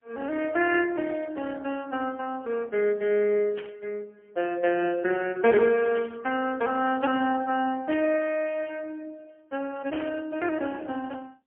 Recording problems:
phone line; 240 Hz to 3.2 kHz, AMR-NB, then MP3
static burst; 4 times, first at 3.5 s; peak -8 dB vs average level

